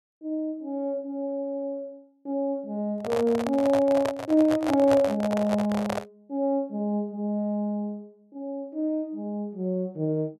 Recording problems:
microphone handling noise; from 3 to 6 s; peak +3 dB vs average level

